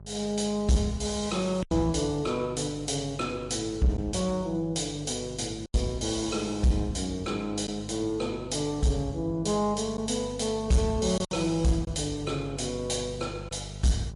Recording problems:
codec artefacts; MP3, log-spectral distance 4 dB, nothing above 11 kHz
distortion; soft clipping, signal-to-distortion ratio 12 dB
electrical hum; 50 Hz, harmonics up to 800 Hz, SNR 15 dB
lost packets; 2% of the sound replaced, filled with silence

